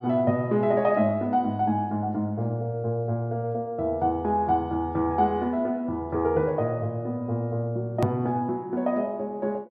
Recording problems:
edit click; at 8 s

